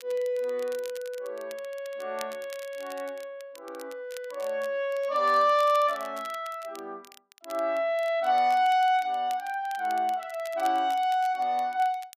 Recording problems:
crackle; vinyl, SNR 22 dB

